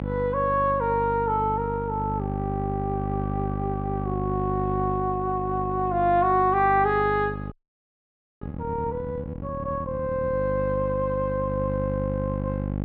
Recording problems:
hum; 50 Hz, harmonics up to 1.1 kHz, SNR 6 dB
audio freezing; at 7.5 s for 1 s

